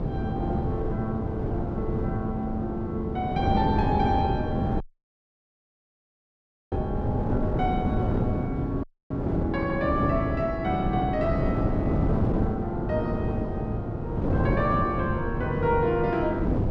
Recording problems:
electrical hum; 50 Hz, harmonics up to 550 Hz, SNR 18 dB
wind noise; below 340 Hz, SNR 0 dB
audio cutting out; at 5 s for 2 s and at 9 s

